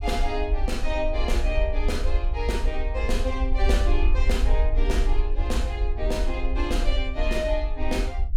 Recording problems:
rumble; below 52 Hz, SNR -2 dB

